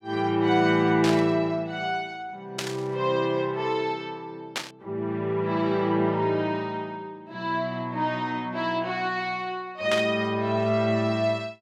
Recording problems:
static burst; 4 times, first at 1 s; peak +2 dB vs average level

